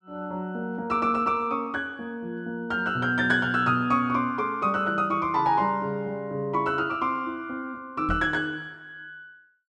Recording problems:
knock on the microphone; at 8 s; peak -2 dB vs average level

